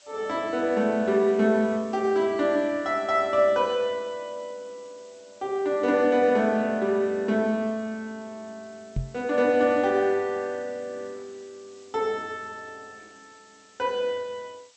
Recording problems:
low-pass filter; nothing above 8 kHz
hiss; slope +2 dB per octave, SNR 29 dB
microphone bump; at 9 s; peak -1 dB vs average level

